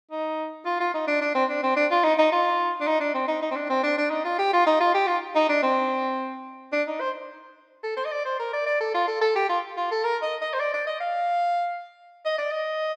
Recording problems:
none

